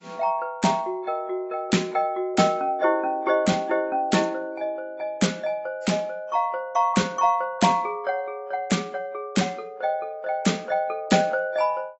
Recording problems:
lossy compression; AAC, log-spectral distance 2 dB, nothing above 7.8 kHz

